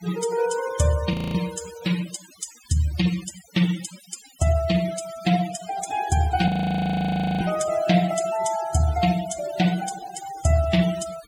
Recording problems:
noise reduction artefacts; signal-to-artefact ratio 13 dB
frozen audio; at 1 s and at 6.5 s for 1 s

